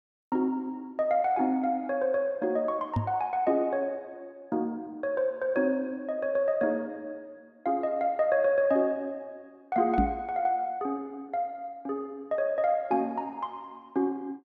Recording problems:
microphone bump; at 3 s and at 10 s; peak +6 dB vs average level

